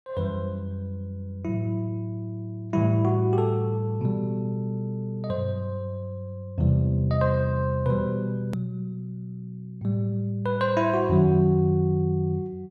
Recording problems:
click at an edit; at 8.5 s

